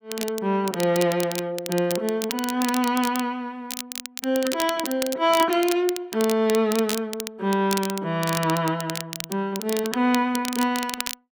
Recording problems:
crackle; vinyl, SNR 9 dB

